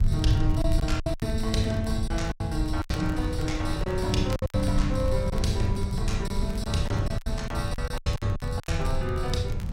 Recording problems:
low-frequency rumble; below 100 Hz, SNR 0 dB
wind noise; below 780 Hz, SNR 14 dB
crackle; vinyl, SNR 22 dB
lost packets; 11% of the sound replaced, filled with silence

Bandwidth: 16 kHz